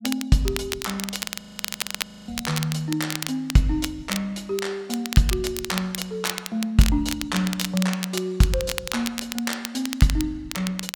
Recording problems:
crackle; vinyl, SNR 7 dB
frozen audio; at 1.5 s for 1 s

